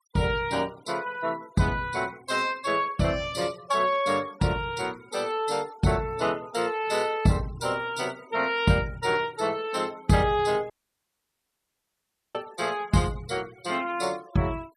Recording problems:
noise reduction artefacts; signal-to-artefact ratio 22 dB
audio cutting out; at 11 s for 1.5 s

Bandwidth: 14.5 kHz